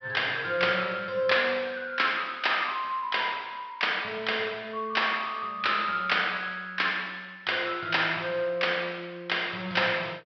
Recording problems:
low-pass filter; nothing above 5.5 kHz

